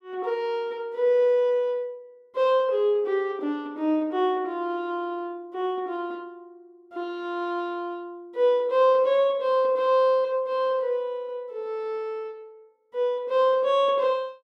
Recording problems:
none

